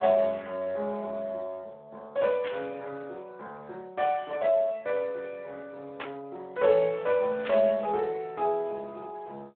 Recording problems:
telephone audio; 300 Hz to 4 kHz, Speex
burst of static; at 2.5 s, at 6 s and at 7.5 s; peak -4 dB vs average level

